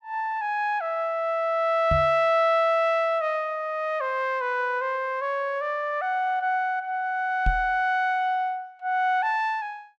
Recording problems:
microphone thump; at 2 s and at 7.5 s; peak +2 dB vs average level

